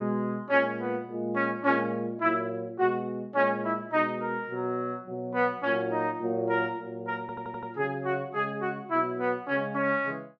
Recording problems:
audio stuttering; at 7 s

